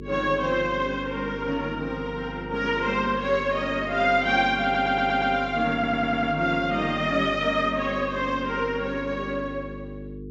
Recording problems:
low-pass filter; nothing above 8 kHz
electrical hum; 50 Hz, harmonics up to 450 Hz, SNR 13 dB
stutter; at 4.5 s and at 5.5 s

